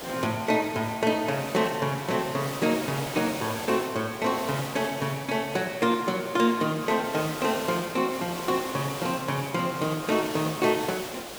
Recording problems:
background hiss; slope -4 dB per octave, SNR 9 dB

